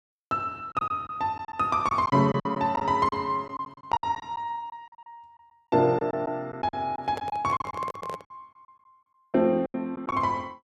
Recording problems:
lost packets; 12% of the sound replaced, filled with silence
handling noise; from 7 to 8.5 s; peak -6 dB vs average level

